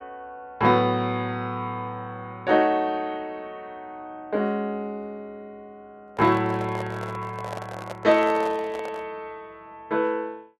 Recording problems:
handling noise; from 6 to 9 s; peak -5 dB vs average level

